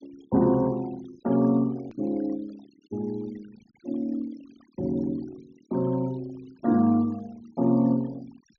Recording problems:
treble missing; nothing above 6.7 kHz
denoising artefacts; signal-to-artefact ratio 25 dB
hard cut with a click; at 2 s

